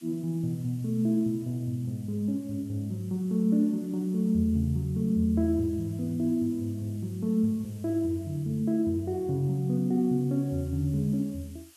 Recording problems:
hiss; slope +3 dB per octave, SNR 27 dB

